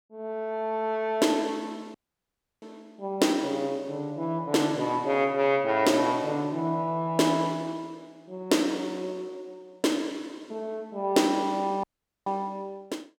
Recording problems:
audio cutting out; at 2 s for 0.5 s and at 12 s

